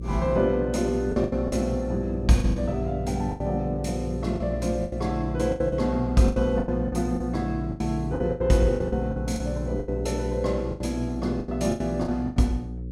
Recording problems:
hum; 60 Hz, harmonics up to 540 Hz, SNR 7 dB
packet loss; 13% of the sound replaced, filled with the last packet

